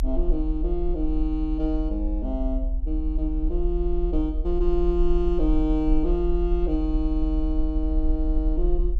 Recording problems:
rumble; below 42 Hz, strongest tone 40 Hz, SNR 1 dB

